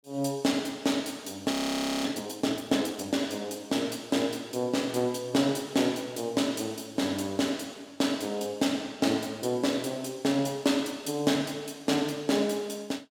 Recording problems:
audio freezing; at 1.5 s for 0.5 s

